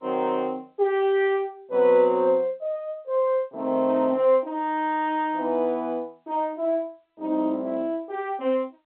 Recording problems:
phone line; 150 Hz to 3.9 kHz, G.711

